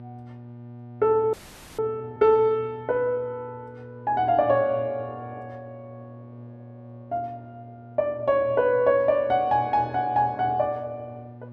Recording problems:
hum; 60 Hz, harmonics up to 960 Hz, SNR 19 dB
frozen audio; at 1.5 s

